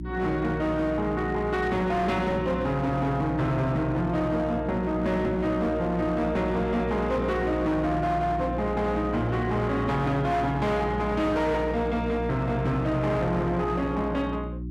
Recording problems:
distorted audio; hard clipping, signal-to-distortion ratio 11 dB
mains hum; 60 Hz, harmonics up to 360 Hz, SNR 8 dB

